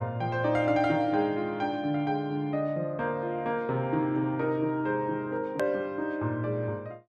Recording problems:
hard cut with a click; at 5.5 s

